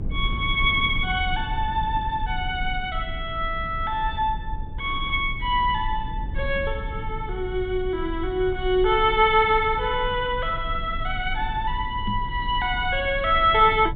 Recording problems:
low-pass filter; nothing above 4 kHz
low-frequency rumble; below 74 Hz, strongest tone 22 Hz, SNR 10 dB
microphone thump; at 12 s; peak -2 dB vs average level

